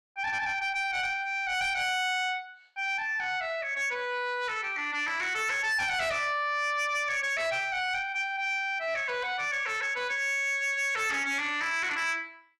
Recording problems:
distortion; soft clipping, signal-to-distortion ratio 10 dB

